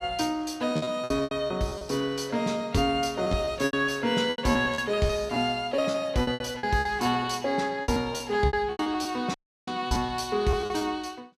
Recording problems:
packet loss; 15% of the sound replaced, filled with repeated pitch periods
dropout; at 9.5 s

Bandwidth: 14.5 kHz